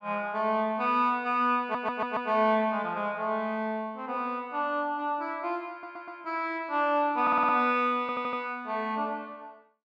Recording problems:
stutter; 4 times, first at 1.5 s

